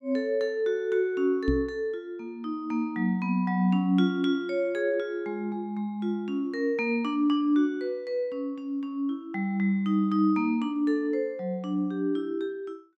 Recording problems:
microphone bump; at 1.5 s; peak +2 dB vs average level

